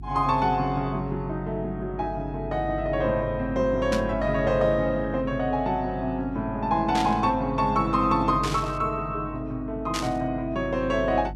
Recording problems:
hum; 50 Hz, harmonics up to 350 Hz, SNR 13 dB
burst of static; 4 times, first at 4 s; peak -1 dB vs average level

